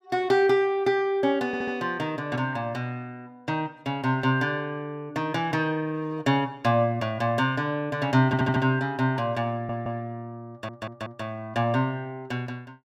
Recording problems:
stutter; 4 times, first at 1.5 s

